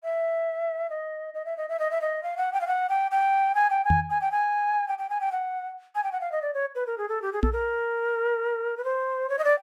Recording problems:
microphone thump; at 4 s and at 7.5 s; peak +6 dB vs average level

